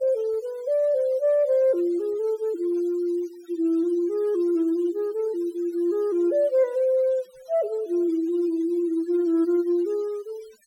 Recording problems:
denoising artefacts; signal-to-artefact ratio 28 dB

